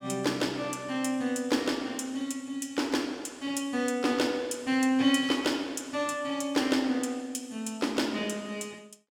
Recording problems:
none

